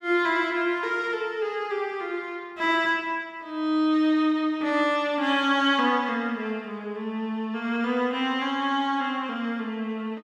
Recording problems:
none

